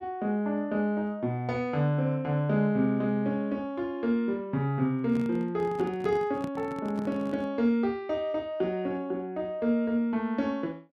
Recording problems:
handling noise; from 5 to 7.5 s; peak -4 dB vs average level

